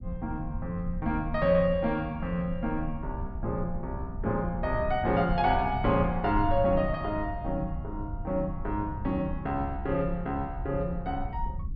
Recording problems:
treble cut off; nothing above 5.5 kHz
rumble; below 92 Hz, SNR 8 dB

